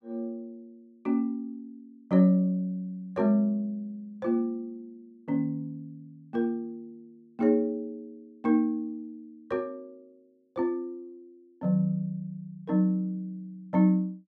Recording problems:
none

